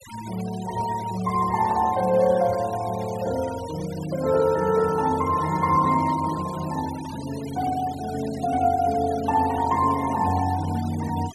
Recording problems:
denoising artefacts; signal-to-artefact ratio 17 dB

